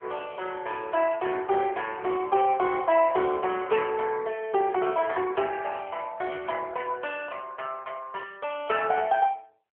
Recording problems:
phone line; 340 Hz to 3.1 kHz, AMR-NB

